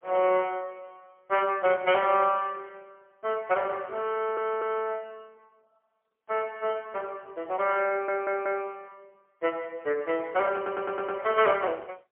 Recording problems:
phone line; 280 Hz to 3.1 kHz, AMR-NB, then MP3
audio stuttering; at 4 s, at 8 s and at 11 s

